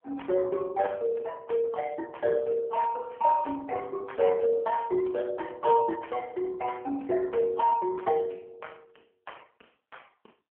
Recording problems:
telephone audio; 300 Hz to 2.6 kHz, AMR-NB

